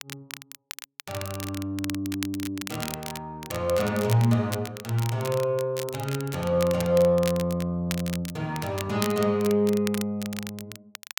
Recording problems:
crackle; vinyl, SNR 12 dB

